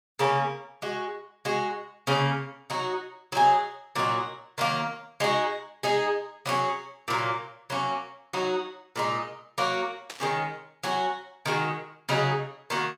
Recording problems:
burst of static; at 10 s; peak -6 dB vs average level

